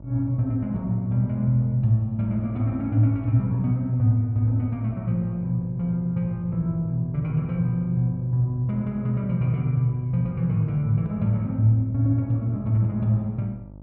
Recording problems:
treble missing; nothing above 8 kHz
hum; 50 Hz, harmonics up to 650 Hz, SNR 21 dB

